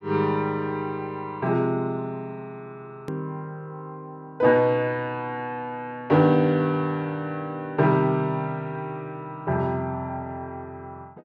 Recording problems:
hard cut with a click; at 3 s

